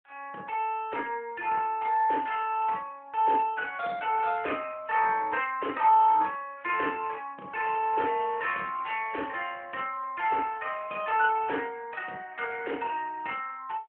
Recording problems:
phone line; 320 Hz to 3.2 kHz, AMR-NB

